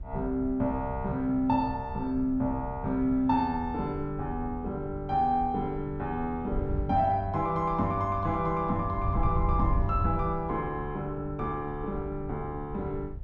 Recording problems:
wind noise; below 96 Hz, SNR 8 dB

